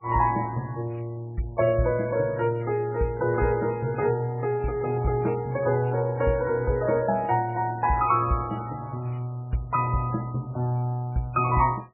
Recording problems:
lossy codec; MP3, log-spectral distance 3 dB, nothing above 2.5 kHz

